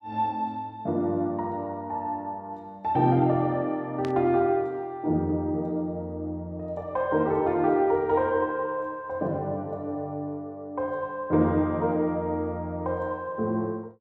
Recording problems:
burst of static; at 4 s; peak -9 dB vs average level

